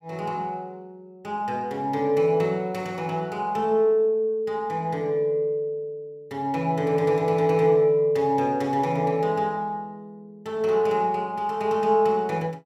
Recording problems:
none

